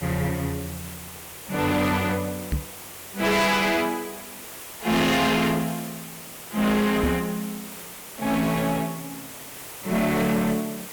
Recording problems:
distorted audio; hard clipping, uneven, signal-to-distortion ratio 6 dB
hiss; slope -2 dB per octave, SNR 13 dB
microphone bump; at 2.5 s and at 7 s; peak +3 dB vs average level

